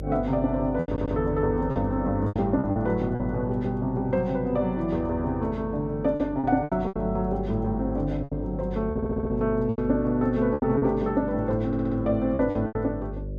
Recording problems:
electrical hum; 50 Hz, harmonics up to 600 Hz, SNR 10 dB
packet loss; 8% of the sound replaced, filled with repeated pitch periods
audio stuttering; at 1 s, at 9 s and at 12 s

